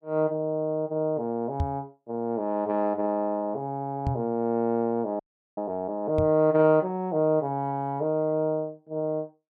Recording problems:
knock on the microphone; at 1.5 s, at 4 s and at 6 s; peak +3 dB vs average level
frozen audio; at 5 s

